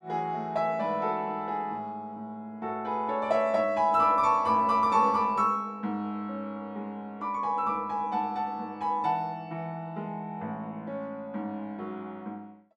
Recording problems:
none

